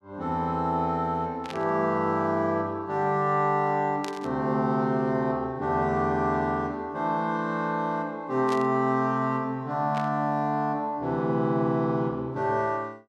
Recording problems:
burst of static; 4 times, first at 1.5 s; peak -7 dB vs average level

